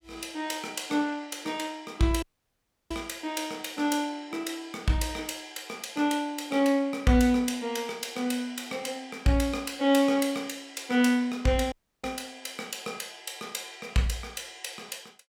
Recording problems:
audio cutting out; at 2 s for 0.5 s and at 12 s

